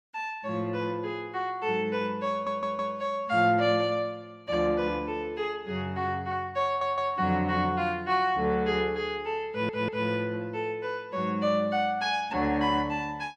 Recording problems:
audio stuttering; at 2.5 s, at 6.5 s and at 9.5 s

